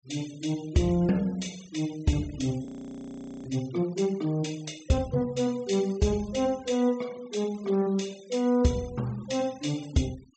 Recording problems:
treble cut off; nothing above 8 kHz
noise reduction artefacts; signal-to-artefact ratio 22 dB
audio freezing; at 2.5 s for 1 s

